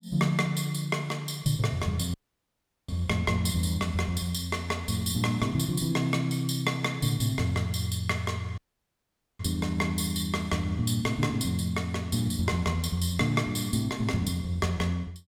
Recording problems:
audio cutting out; at 2 s for 0.5 s and at 8.5 s for 1 s

